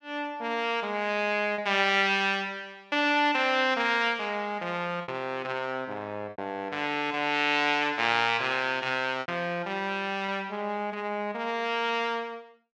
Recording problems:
packet loss; 2% of the sound replaced, filled with repeated pitch periods

